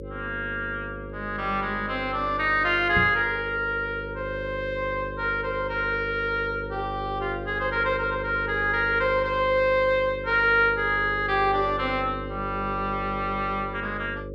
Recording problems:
hum; 50 Hz, harmonics up to 550 Hz, SNR 11 dB
microphone thump; at 3 s; peak 0 dB vs average level

